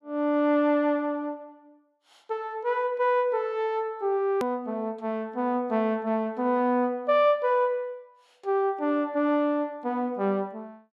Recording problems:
click at an edit; at 4.5 s

